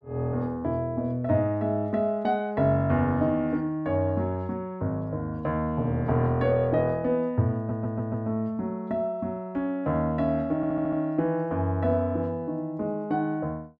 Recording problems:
stutter; at 7.5 s and at 11 s

